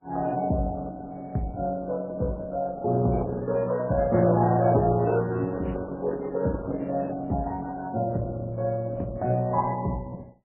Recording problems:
lossy codec; Opus, then MP3, log-spectral distance 3 dB, nothing above 2.6 kHz
crackling; from 3 to 5 s and from 5.5 to 7 s; loose cable, SNR 25 dB

